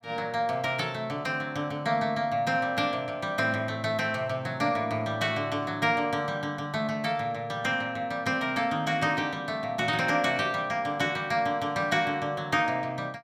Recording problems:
none

